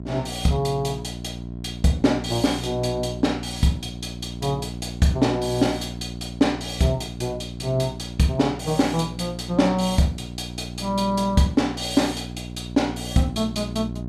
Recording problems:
electrical hum; 60 Hz, harmonics up to 720 Hz, SNR 11 dB

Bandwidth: 14.5 kHz